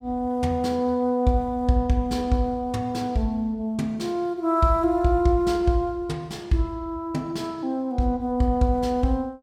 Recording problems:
none

